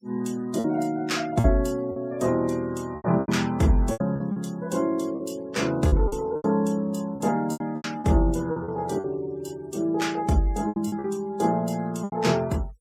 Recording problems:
denoising artefacts; signal-to-artefact ratio 23 dB
lost packets; 10% of the sound replaced, filled with repeated pitch periods

